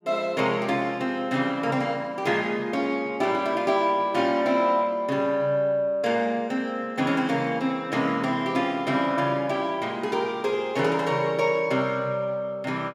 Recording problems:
none

